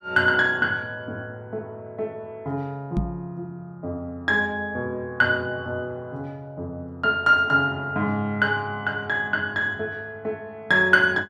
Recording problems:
microphone thump; at 3 s; peak +2 dB vs average level

